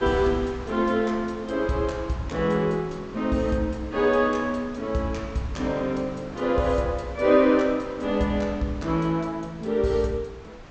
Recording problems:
treble missing; nothing above 8 kHz
wind on the microphone; below 1.1 kHz, SNR 17 dB

